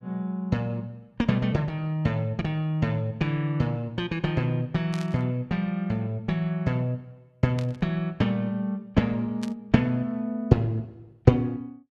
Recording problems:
static burst; at 5 s, at 7.5 s and at 9.5 s; peak -8 dB vs average level

